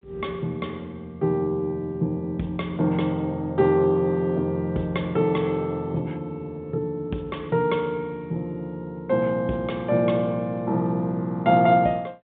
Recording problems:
telephone audio; 130 Hz to 3.7 kHz, G.726

